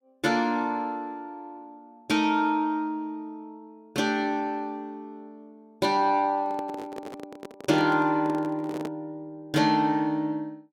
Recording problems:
microphone handling noise; from 6.5 to 9 s; peak -4 dB vs average level

